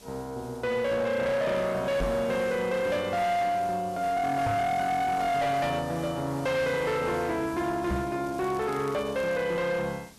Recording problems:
distortion; hard clipping, signal-to-distortion ratio 10 dB
hiss; SNR 21 dB
microphone thump; at 2 s, at 4.5 s and at 8 s; peak +1 dB vs average level
crackling; from 8 to 9.5 s; loose cable, SNR 25 dB

